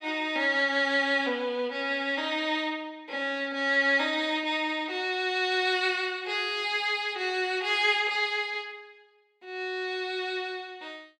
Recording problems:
none

